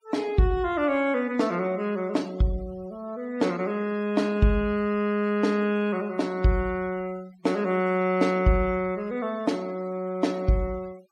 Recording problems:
denoising artefacts; signal-to-artefact ratio 24 dB

